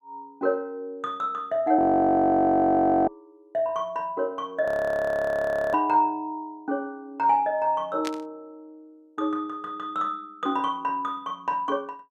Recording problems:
audio freezing; at 2 s for 1.5 s and at 4.5 s for 1 s
static burst; at 8 s; peak -4 dB vs average level

